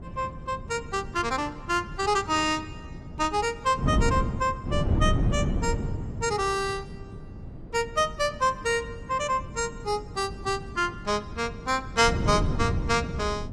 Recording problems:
lossy compression; Opus, log-spectral distance 2 dB, nothing above 15.5 kHz
wind on the microphone; below 200 Hz, SNR 6 dB

